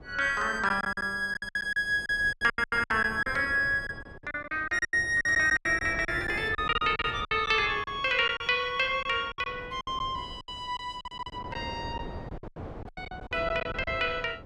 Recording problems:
wind on the microphone; below 530 Hz, SNR 16 dB
lost packets; 15% of the sound replaced, filled with silence

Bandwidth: 12.5 kHz